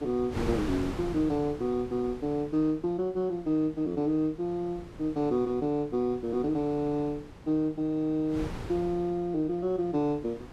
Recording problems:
wind on the microphone; below 510 Hz, SNR 13 dB

